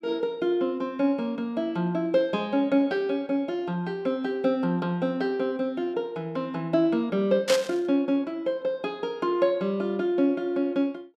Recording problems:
burst of static; at 7.5 s; peak +3 dB vs average level

